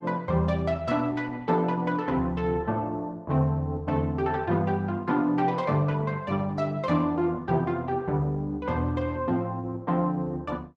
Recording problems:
lossy codec; Opus, log-spectral distance 2 dB

